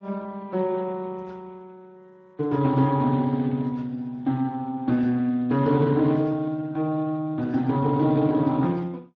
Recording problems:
codec artefacts; Speex, log-spectral distance 2 dB

